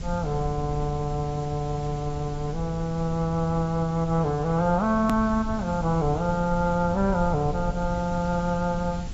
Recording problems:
codec artefacts; AAC, log-spectral distance 3 dB, nothing above 14.1 kHz
hiss; slope -2 dB per octave, SNR 21 dB
low-frequency rumble; below 110 Hz, SNR 11 dB
hard cut with a click; at 5 s

